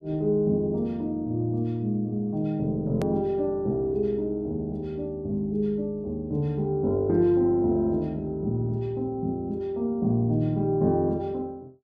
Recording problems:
hard cut with a click; at 3 s

